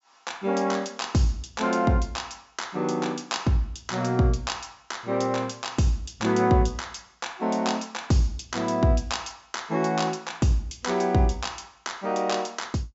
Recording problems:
low-pass filter; nothing above 8 kHz

